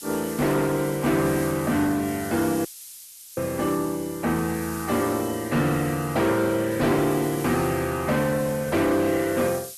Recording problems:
lossy codec; Opus, log-spectral distance 2 dB, nothing above 13.1 kHz
distorted audio; hard clipping, signal-to-distortion ratio 12 dB
hiss; SNR 14 dB
audio cutting out; at 2.5 s for 0.5 s

